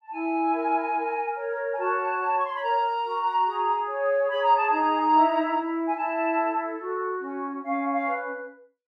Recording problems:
none

